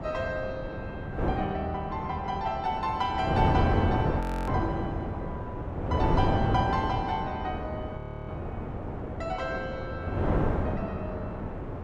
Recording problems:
wind noise; below 530 Hz, SNR -1 dB
frozen audio; at 4 s and at 8 s

